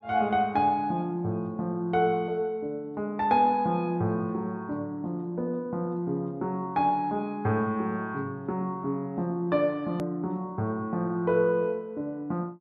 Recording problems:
click at an edit; at 10 s

